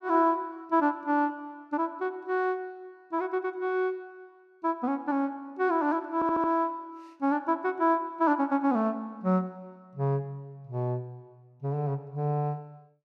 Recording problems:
audio stuttering; at 6 s

